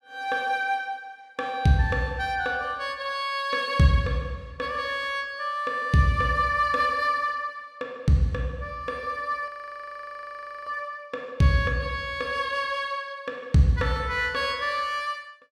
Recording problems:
audio freezing; at 9.5 s for 1 s

